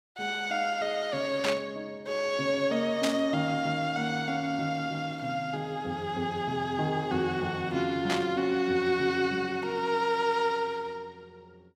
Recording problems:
static burst; at 1.5 s, at 3 s and at 8 s; peak +2 dB vs average level

